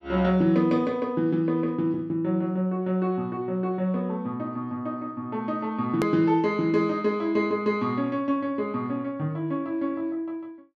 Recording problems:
hard cut with a click; at 6 s

